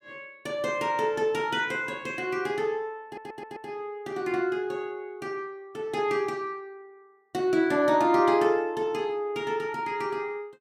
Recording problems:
stutter; at 3 s

